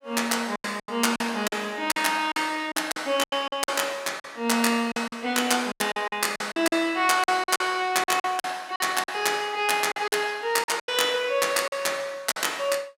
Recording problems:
lost packets; 12% of the sound replaced, filled with silence

